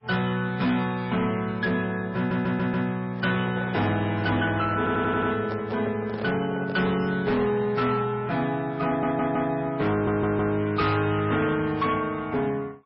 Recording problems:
codec artefacts; MP3, log-spectral distance 3 dB, nothing above 5.3 kHz
distortion; hard clipping, signal-to-distortion ratio 11 dB
audio stuttering; 4 times, first at 2 s
handling noise; from 3 to 7 s; peak -6 dB vs average level

